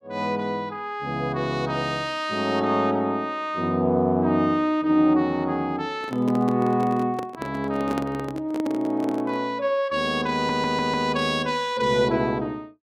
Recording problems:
microphone handling noise; from 6 to 9.5 s; peak -1 dB vs average level
audio stuttering; at 10 s

